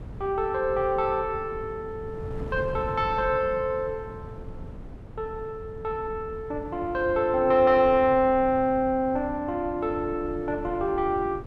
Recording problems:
wind noise; below 220 Hz, SNR 15 dB

